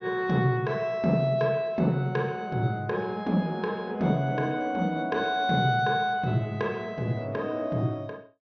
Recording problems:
low-pass filter; nothing above 6.3 kHz

